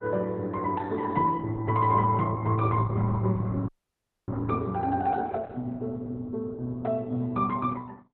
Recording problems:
lossy codec; Opus, log-spectral distance 2 dB, nothing above 3.6 kHz
frozen audio; at 3.5 s for 0.5 s

